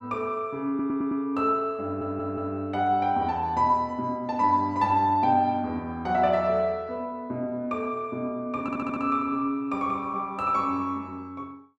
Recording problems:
audio stuttering; at 0.5 s, at 2 s and at 8.5 s

